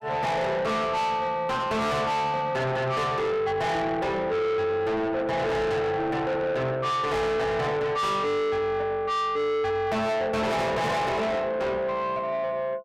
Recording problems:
distortion; soft clipping, signal-to-distortion ratio 7 dB

